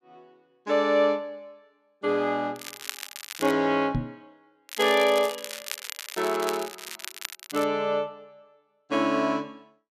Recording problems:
crackling; at 2.5 s and from 4.5 to 7.5 s; loose cable, SNR 11 dB
knock on the microphone; at 4 s; peak +1 dB vs average level

